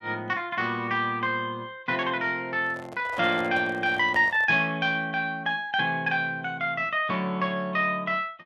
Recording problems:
microphone handling noise; from 2.5 to 4.5 s; peak -8 dB vs average level

